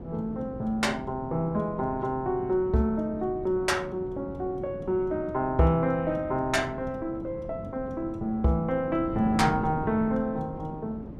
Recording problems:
wind on the microphone; below 330 Hz, SNR 11 dB

